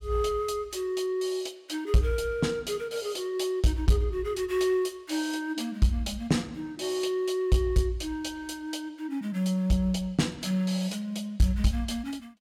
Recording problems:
distorted audio; soft clipping, signal-to-distortion ratio 12 dB

